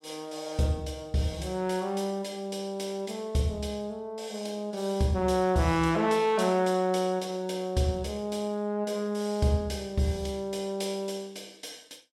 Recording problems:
none

